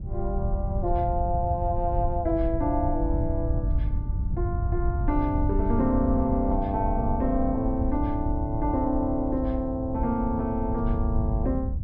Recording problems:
treble cut off; nothing above 5.5 kHz
wind noise; below 96 Hz, SNR 2 dB

